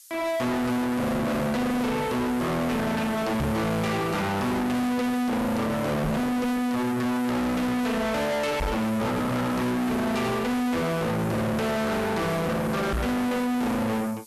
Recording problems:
distorted audio; soft clipping, signal-to-distortion ratio 6 dB
background hiss; slope +7 dB per octave, SNR 21 dB
knock on the microphone; 4 times, first at 3.5 s; peak +6 dB vs average level

